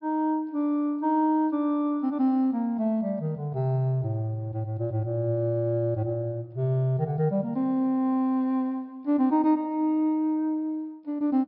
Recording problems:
treble cut off; nothing above 5.5 kHz

